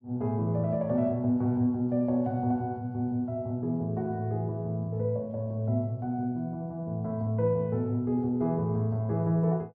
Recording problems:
none

